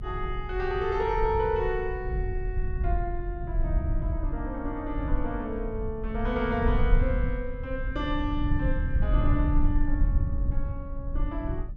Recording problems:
rumble; below 74 Hz, SNR -1 dB

